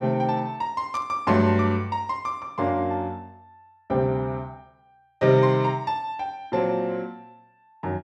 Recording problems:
static burst; at 1 s; peak -14 dB vs average level

